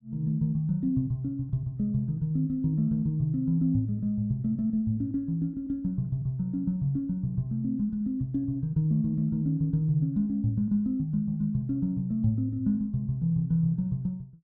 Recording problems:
none

